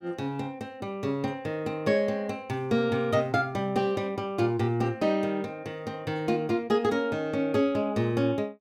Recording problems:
none

